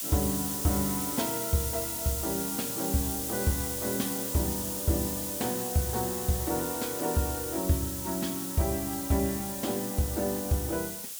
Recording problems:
hiss; SNR 1 dB

